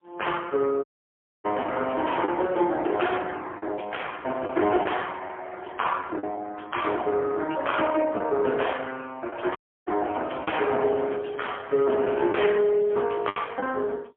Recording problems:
telephone audio; 280 Hz to 3.3 kHz, AMR-NB, then MP3
lost packets; 3% of the sound replaced, filled with the last packet
audio cutting out; at 1 s for 0.5 s and at 9.5 s
crackling; at 4 s and from 10 to 13 s; loose cable, SNR 26 dB

